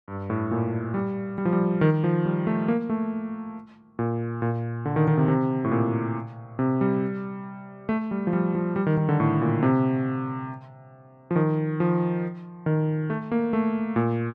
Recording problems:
none

